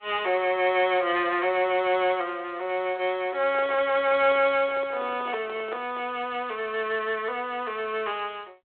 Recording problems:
telephone audio; 300 Hz to 4 kHz, G.726
handling noise; from 3.5 to 6 s; peak -6 dB vs average level

